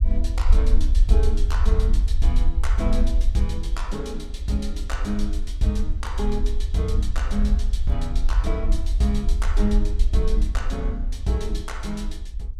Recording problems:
low-frequency rumble; below 54 Hz, SNR -4 dB

